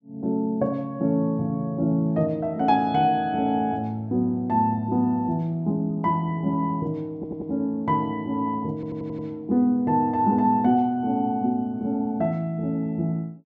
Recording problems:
stutter; at 7 s and at 8.5 s

